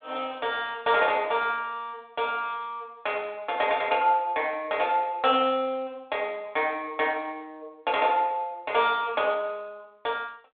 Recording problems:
telephone audio; 280 Hz to 3.7 kHz, G.726

